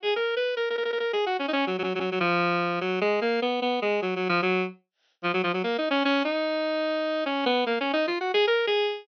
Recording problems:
treble missing; nothing above 6.2 kHz
audio stuttering; at 0.5 s and at 1.5 s

